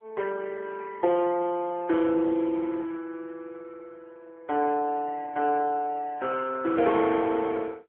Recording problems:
phone line; 260 Hz to 2.8 kHz, AMR-NB

